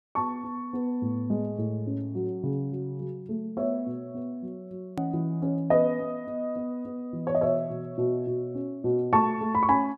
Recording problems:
click at an edit; at 5 s

